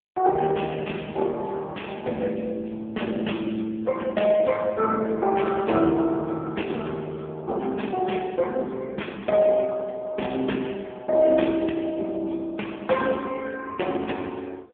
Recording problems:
phone line; 260 Hz to 3.4 kHz, AMR-NB

